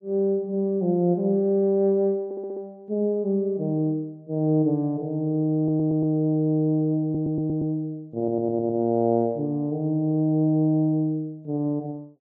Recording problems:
stutter; 4 times, first at 2.5 s

